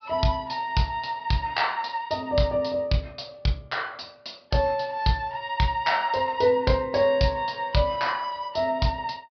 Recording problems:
treble cut off; nothing above 5.5 kHz

